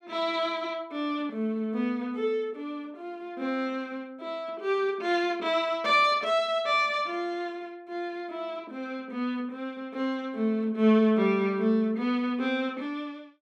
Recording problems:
none

